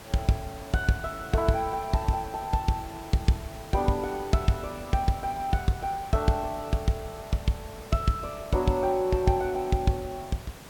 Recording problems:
background hiss; slope -4 dB per octave, SNR 16 dB

